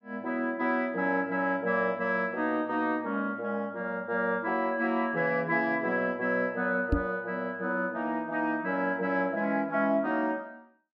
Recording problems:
knock on the microphone; at 7 s; peak +6 dB vs average level

